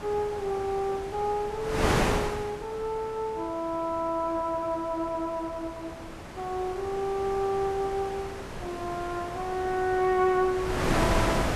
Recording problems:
wind noise; below 1.5 kHz, SNR 3 dB

